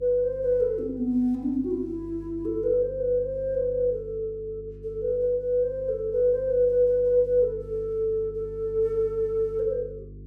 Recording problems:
hum; 50 Hz, harmonics up to 450 Hz, SNR 18 dB

